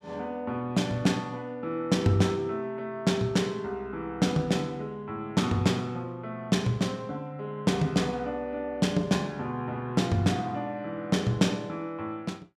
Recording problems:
none

